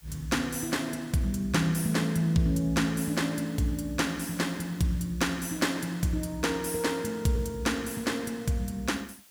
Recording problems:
background hiss; slope +1 dB per octave, SNR 27 dB

